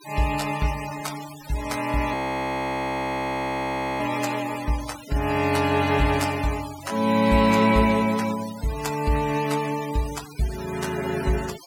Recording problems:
denoising artefacts; signal-to-artefact ratio 14 dB
frozen audio; at 2 s for 2 s

